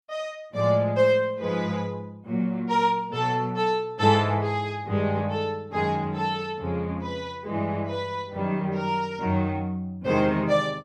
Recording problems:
none

